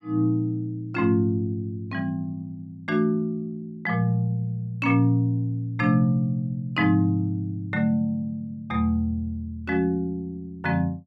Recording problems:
none

